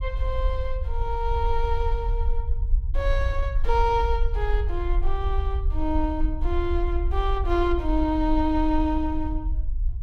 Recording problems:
low-frequency rumble; below 54 Hz, SNR 1 dB

